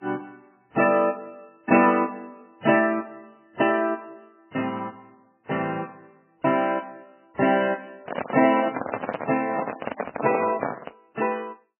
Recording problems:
lossy compression; MP3, then AAC, log-spectral distance 5 dB, nothing above 2.4 kHz
handling noise; from 8 to 11 s; peak +2 dB vs average level

